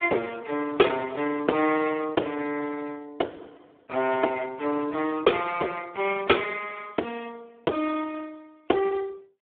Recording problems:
phone line; 280 Hz to 3.4 kHz, Speex

